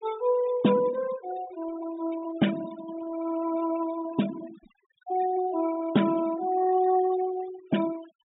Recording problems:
treble cut off; nothing above 4 kHz
noise reduction artefacts; signal-to-artefact ratio 15 dB

